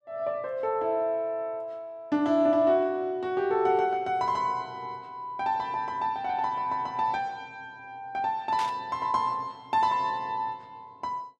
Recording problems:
static burst; at 8.5 s; peak -6 dB vs average level

